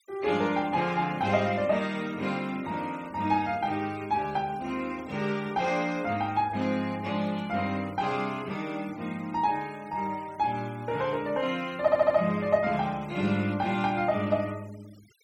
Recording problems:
noise reduction artefacts; signal-to-artefact ratio 23 dB
audio stuttering; at 12 s

